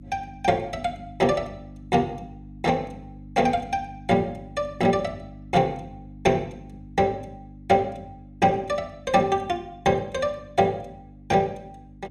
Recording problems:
hum; 50 Hz, harmonics up to 300 Hz, SNR 19 dB

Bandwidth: 14.5 kHz